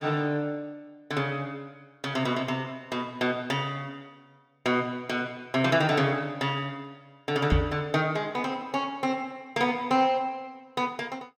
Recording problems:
microphone thump; at 7.5 s; peak +8 dB vs average level

